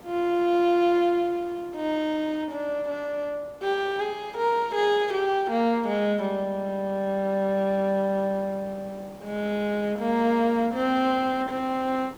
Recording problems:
hiss; slope -7 dB per octave, SNR 23 dB

